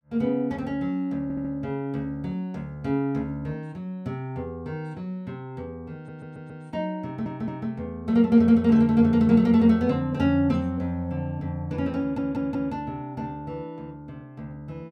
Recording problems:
audio stuttering; 4 times, first at 1 s

